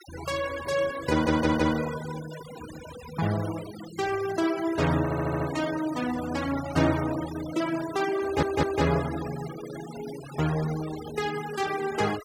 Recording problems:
noise reduction artefacts; signal-to-artefact ratio 13 dB
stutter; at 1 s, at 5 s and at 8 s

